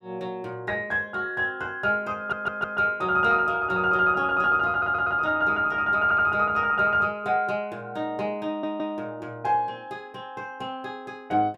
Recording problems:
stutter; 4 times, first at 2 s

